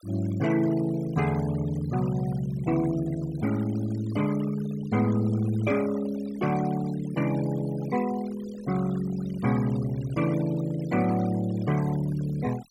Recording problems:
noise reduction artefacts; signal-to-artefact ratio 17 dB

